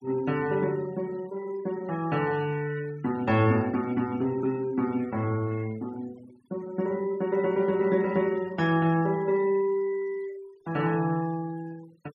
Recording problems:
noise reduction artefacts; signal-to-artefact ratio 22 dB

